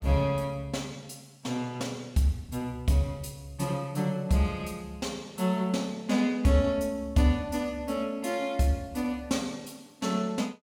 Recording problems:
none

